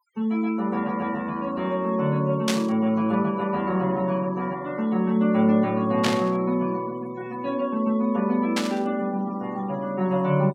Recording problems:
denoising artefacts; signal-to-artefact ratio 25 dB
static burst; at 2.5 s, at 6 s and at 8.5 s; peak +3 dB vs average level

